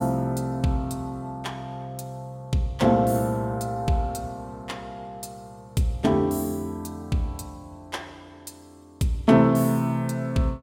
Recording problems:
none

